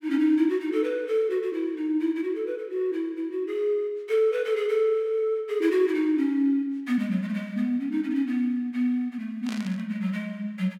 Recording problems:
burst of static; at 9.5 s; peak -9 dB vs average level

